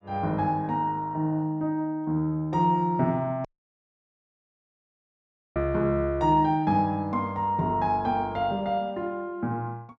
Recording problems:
dropout; at 3.5 s for 2 s

